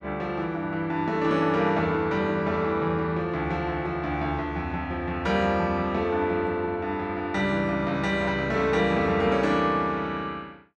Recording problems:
none

